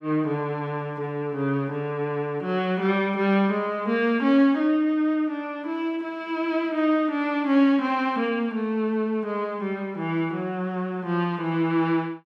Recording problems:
none

